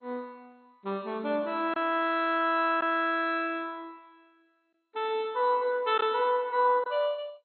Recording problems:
lossy codec; MP2, log-spectral distance 4 dB, nothing above 3.6 kHz
lost packets; 1.2% of the sound replaced, filled with silence

